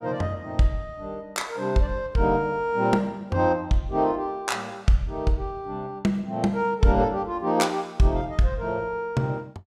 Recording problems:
none

